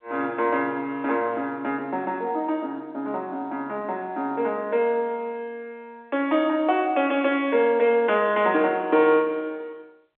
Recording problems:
phone line; 280 Hz to 3.7 kHz, G.711

